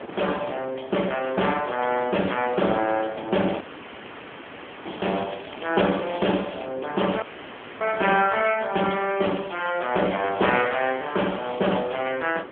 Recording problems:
telephone audio; 190 Hz to 3.3 kHz, AMR-NB
background hiss; SNR 27 dB
wind on the microphone; below 1 kHz, SNR 15 dB
crackling; from 3.5 to 6.5 s and from 9 to 12 s; loose cable, SNR 19 dB
audio cutting out; at 3.5 s for 1 s and at 7 s for 0.5 s

